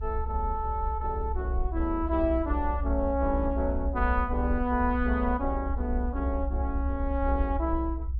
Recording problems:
treble missing; nothing above 5.5 kHz
low-frequency rumble; below 64 Hz, strongest tone 62 Hz, SNR 2 dB

